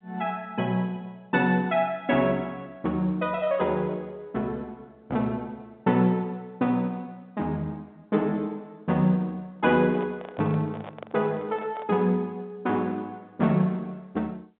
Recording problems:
telephone audio; 150 Hz to 3.9 kHz, G.711
microphone handling noise; from 9.5 to 12 s; peak -8 dB vs average level

